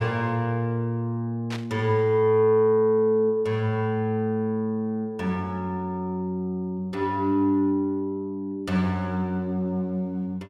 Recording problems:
burst of static; at 1.5 s; peak -7 dB vs average level

